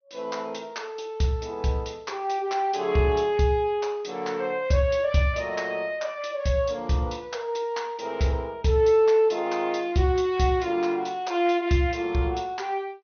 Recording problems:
low-pass filter; nothing above 6.3 kHz
codec artefacts; Vorbis, log-spectral distance 2 dB

